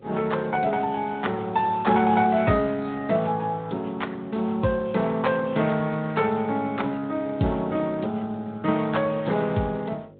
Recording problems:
treble cut off; nothing above 3.8 kHz
lossy compression; Speex, log-spectral distance 3 dB
hum; 50 Hz, harmonics up to 600 Hz, SNR 26 dB

